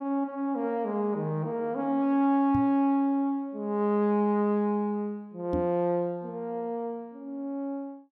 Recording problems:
knock on the microphone; at 2.5 s and at 5.5 s; peak 0 dB vs average level

